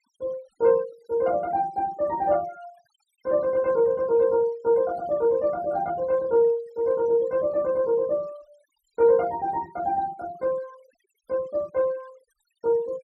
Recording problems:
noise reduction artefacts; signal-to-artefact ratio 27 dB

